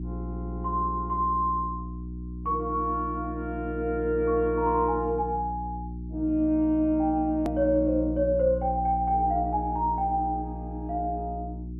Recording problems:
treble missing; nothing above 3.3 kHz
electrical hum; 60 Hz, harmonics up to 360 Hz, SNR 9 dB
edit click; at 7.5 s

